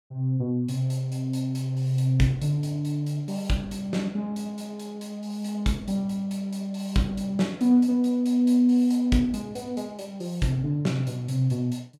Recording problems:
none

